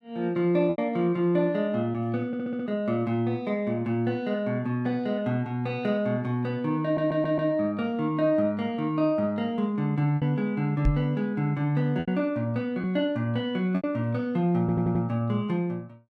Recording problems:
packet loss; 2% of the sound replaced, filled with repeated pitch periods
audio stuttering; at 2.5 s, at 7 s and at 15 s
knock on the microphone; at 11 s; peak +5 dB vs average level

